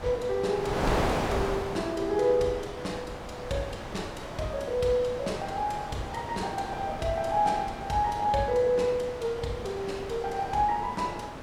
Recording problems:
wind on the microphone; below 1.1 kHz, SNR 6 dB

